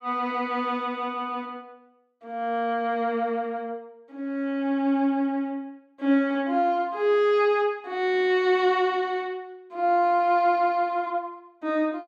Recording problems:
none

